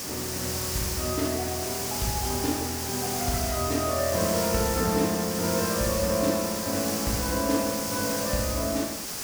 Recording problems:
background hiss; SNR 1 dB

